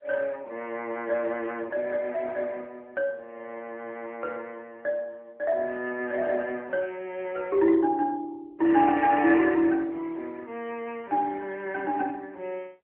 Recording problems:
telephone audio; 260 Hz to 3.6 kHz, AMR-NB

